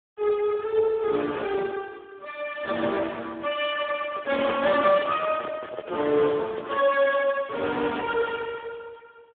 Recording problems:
phone line; 260 Hz to 3.5 kHz, Speex
microphone handling noise; from 4 to 7 s; peak -7 dB vs average level

